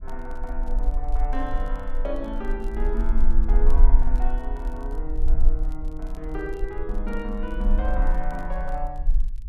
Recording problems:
rumble; below 36 Hz, strongest tone 18 Hz, SNR -6 dB
crackling; vinyl, SNR 26 dB

